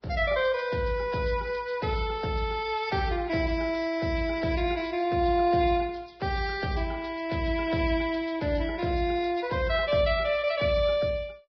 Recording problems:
lossy codec; Vorbis, log-spectral distance 3 dB

